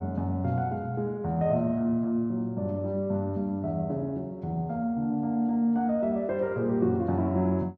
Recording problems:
none

